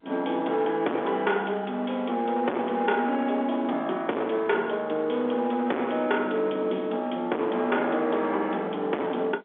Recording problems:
phone line; 260 Hz to 3.6 kHz, G.711
distorted audio; hard clipping, signal-to-distortion ratio 5 dB

